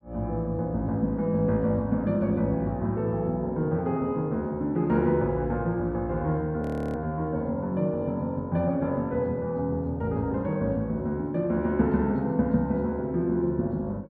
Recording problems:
frozen audio; at 6.5 s

